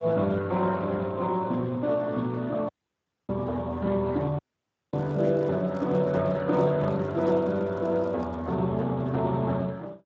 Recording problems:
lossy compression; Speex, log-spectral distance 2 dB
audio cutting out; at 2.5 s for 0.5 s and at 4.5 s for 0.5 s
handling noise; from 5 to 8.5 s; peak -10 dB vs average level

